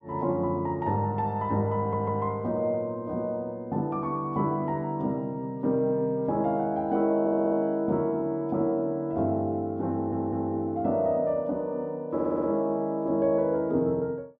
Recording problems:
audio stuttering; 4 times, first at 2 s

